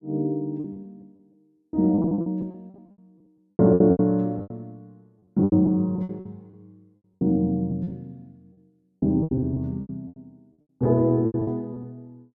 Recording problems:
packet loss; 18% of the sound replaced, filled with repeated pitch periods

